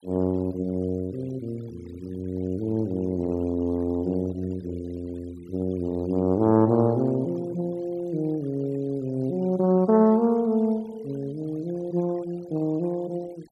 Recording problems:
noise reduction artefacts; signal-to-artefact ratio 27 dB

